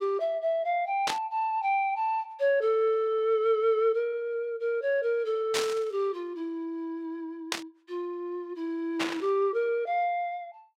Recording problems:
burst of static; 4 times, first at 1 s; peak +4 dB vs average level

